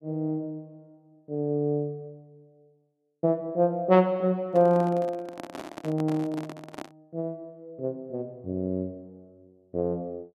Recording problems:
handling noise; from 4.5 to 7 s; peak -7 dB vs average level

